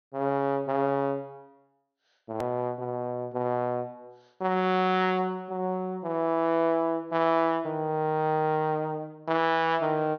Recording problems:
low-pass filter; nothing above 6.4 kHz
edit click; at 2.5 s

